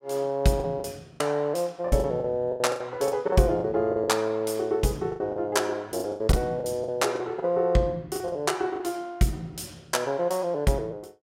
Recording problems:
lost packets; 11% of the sound replaced, filled with the last packet

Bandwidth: 16.5 kHz